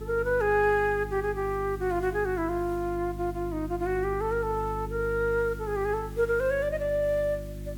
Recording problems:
hum; 50 Hz, harmonics up to 350 Hz, SNR 11 dB
hiss; slope -1 dB per octave, SNR 26 dB

